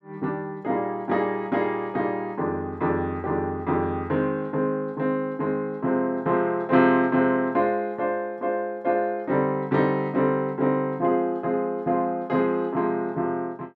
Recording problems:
none

